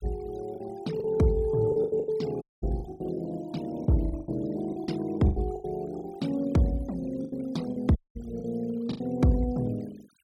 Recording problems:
denoising artefacts; signal-to-artefact ratio 23 dB
packet loss; 11% of the sound replaced, filled with the last packet
audio cutting out; at 2.5 s and at 8 s

